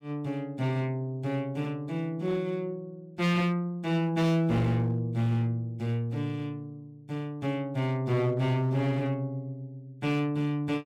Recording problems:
distortion; hard clipping, signal-to-distortion ratio 12 dB

